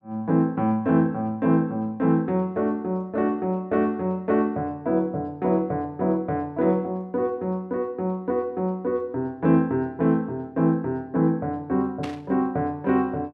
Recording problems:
burst of static; at 12 s; peak -8 dB vs average level

